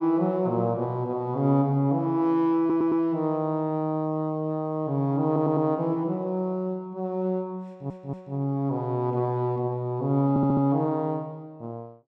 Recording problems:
audio stuttering; 4 times, first at 2.5 s

